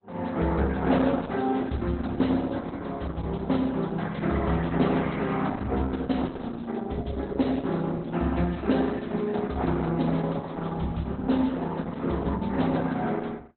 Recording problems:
lossy compression; Opus, log-spectral distance 5 dB, nothing above 4.1 kHz

